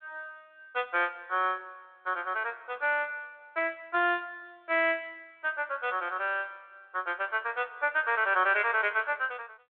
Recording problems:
phone line; 320 Hz to 3.5 kHz, G.726

